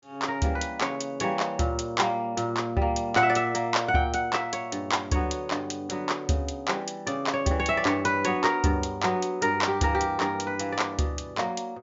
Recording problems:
treble cut off; nothing above 7.4 kHz

